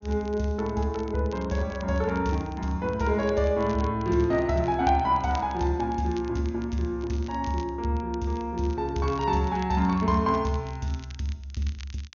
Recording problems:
treble cut off; nothing above 6.8 kHz
crackling; vinyl, SNR 23 dB

